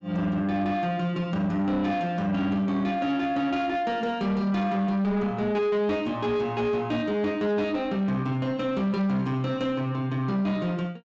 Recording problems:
low-pass filter; nothing above 8 kHz
distorted audio; soft clipping, signal-to-distortion ratio 12 dB

